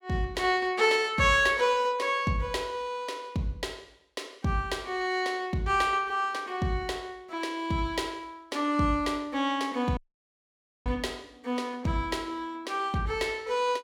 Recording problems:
dropout; at 10 s for 1 s

